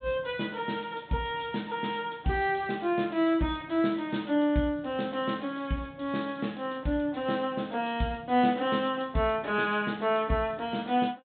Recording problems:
treble missing; nothing above 4 kHz

